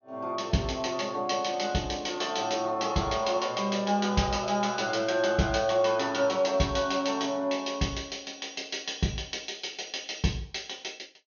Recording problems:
treble missing; nothing above 6.5 kHz

